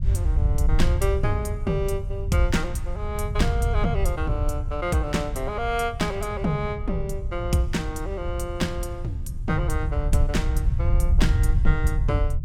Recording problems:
low-frequency rumble; below 80 Hz, SNR -1 dB

